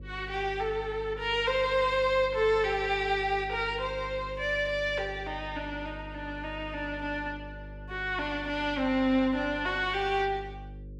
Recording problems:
hum; 50 Hz, harmonics up to 550 Hz, SNR 15 dB

